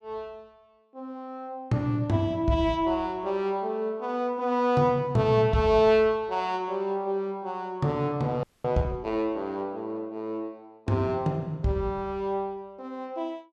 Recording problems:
audio freezing; at 8.5 s

